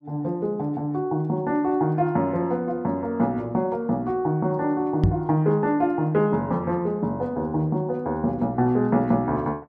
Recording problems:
knock on the microphone; at 5 s; peak +7 dB vs average level

